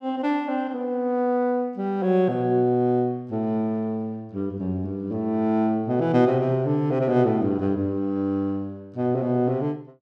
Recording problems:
none

